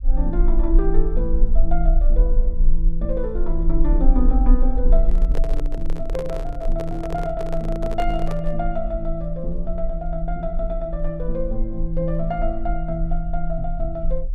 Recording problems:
low-frequency rumble; below 36 Hz, strongest tone 18 Hz, SNR -2 dB
microphone handling noise; from 5 to 8.5 s; peak -1 dB vs average level

